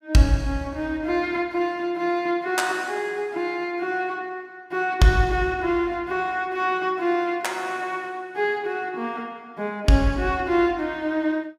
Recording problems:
none

